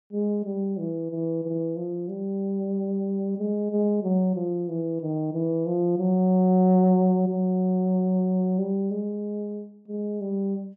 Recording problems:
none

